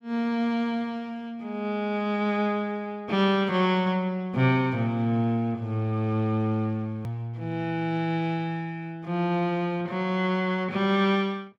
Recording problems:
hard cut with a click; at 7 s

